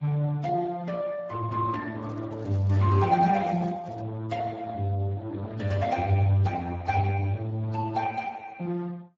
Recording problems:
lossy codec; Vorbis, then Speex, log-spectral distance 3 dB
handling noise; from 2 to 4 s; peak -10 dB vs average level

